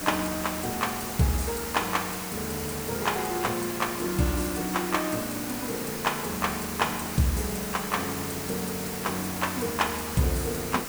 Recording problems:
hiss; slope -3 dB per octave, SNR 4 dB

